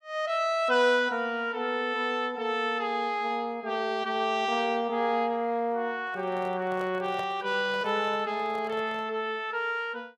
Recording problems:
microphone handling noise; from 6 to 9 s; peak -7 dB vs average level

